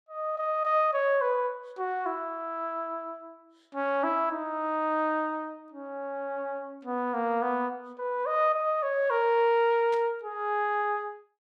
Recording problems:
static burst; at 10 s; peak -13 dB vs average level

